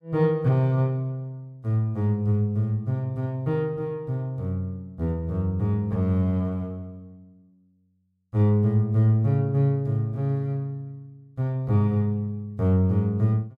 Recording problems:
none

